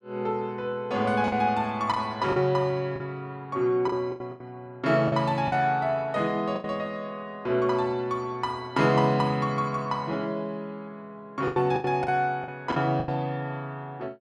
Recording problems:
lost packets; 6% of the sound replaced, filled with the last packet

